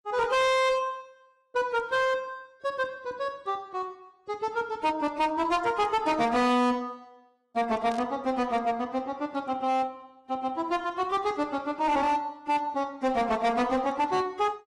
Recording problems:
lossy compression; AAC, log-spectral distance 2 dB, nothing above 11 kHz
distorted audio; hard clipping, signal-to-distortion ratio 7 dB
burst of static; at 8 s; peak -13 dB vs average level

